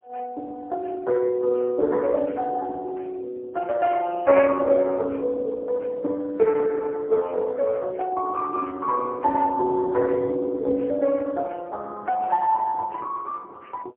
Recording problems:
phone line; 240 Hz to 2.8 kHz, AMR-NB, then MP3

